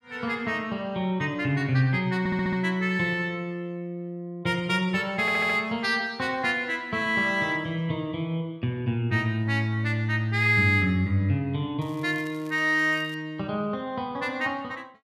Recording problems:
audio stuttering; at 2 s and at 5 s
crackle; from 12 to 13 s; loose cable, SNR 26 dB

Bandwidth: 14.5 kHz